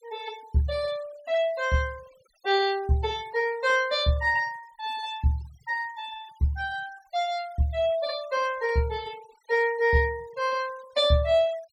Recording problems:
denoising artefacts; signal-to-artefact ratio 23 dB

